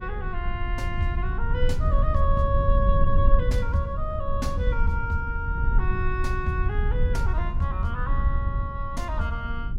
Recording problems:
low-frequency rumble; below 72 Hz, SNR -3 dB

